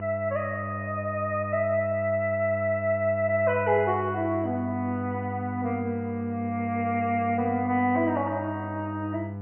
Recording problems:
low-pass filter; nothing above 3 kHz
hum; 50 Hz, harmonics up to 1 kHz, SNR 9 dB

